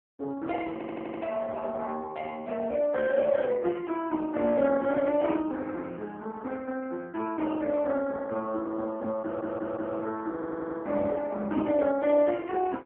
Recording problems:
phone line; 170 Hz to 3.7 kHz, AMR-NB
audio stuttering; at 0.5 s, at 9 s and at 10 s

